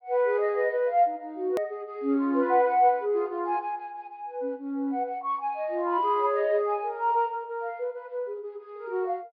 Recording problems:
low-pass filter; nothing above 5 kHz
edit click; at 1.5 s

